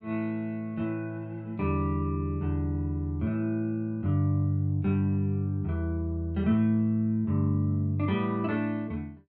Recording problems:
none

